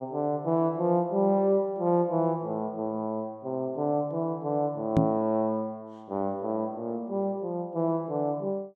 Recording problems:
knock on the microphone; at 5 s; peak +8 dB vs average level

